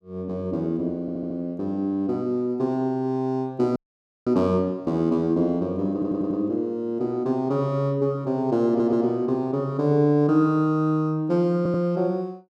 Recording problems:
audio stuttering; 4 times, first at 1 s
dropout; at 4 s for 0.5 s

